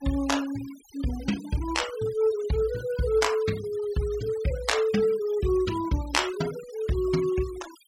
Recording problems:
denoising artefacts; signal-to-artefact ratio 16 dB

